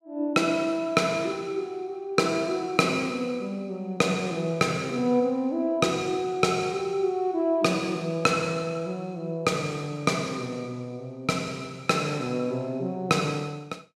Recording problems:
none

